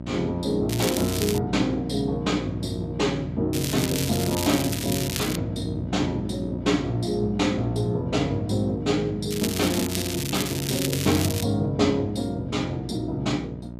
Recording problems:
hum; 60 Hz, harmonics up to 960 Hz, SNR 9 dB
crackling; at 0.5 s, from 3.5 to 5.5 s and from 9.5 to 11 s; loose cable, SNR 5 dB

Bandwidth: 14.5 kHz